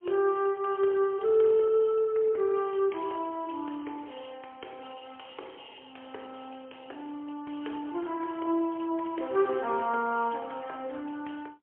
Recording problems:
telephone audio; 320 Hz to 3.4 kHz, AMR-NB, then MP3

